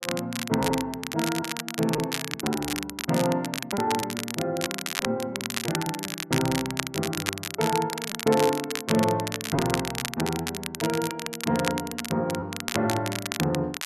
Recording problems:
crackling; vinyl, SNR 4 dB
packet loss; 4% of the sound replaced, filled with repeated pitch periods

